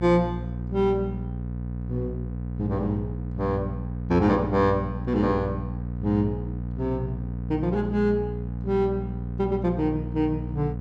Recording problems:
hum; 60 Hz, harmonics up to 540 Hz, SNR 6 dB

